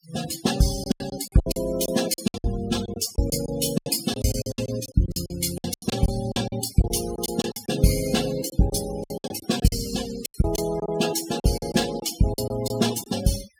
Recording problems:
denoising artefacts; signal-to-artefact ratio 13 dB
lost packets; 15% of the sound replaced, filled with silence

